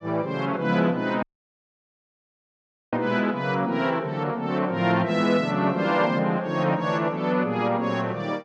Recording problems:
dropout; at 1 s for 1.5 s

